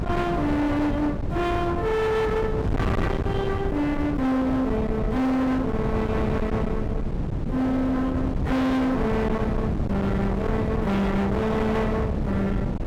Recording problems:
distortion; hard clipping, signal-to-distortion ratio 6 dB
wind noise; below 330 Hz, SNR 3 dB

